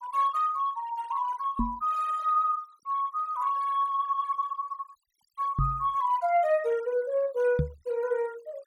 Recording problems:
noise reduction artefacts; signal-to-artefact ratio 22 dB
microphone thump; at 1.5 s, at 5.5 s and at 7.5 s; peak +5 dB vs average level

